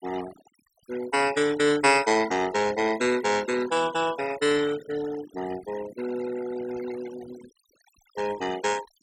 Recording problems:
denoising artefacts; signal-to-artefact ratio 14 dB

